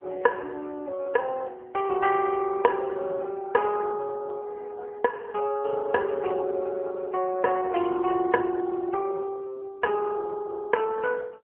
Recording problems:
telephone audio; 300 Hz to 2.8 kHz, AMR-NB

